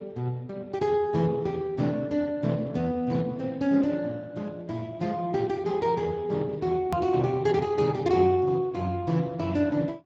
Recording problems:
lossy compression; Speex, log-spectral distance 3 dB, nothing above 17.1 kHz
edit click; at 7 s

